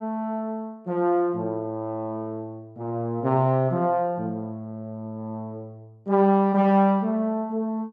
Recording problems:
none

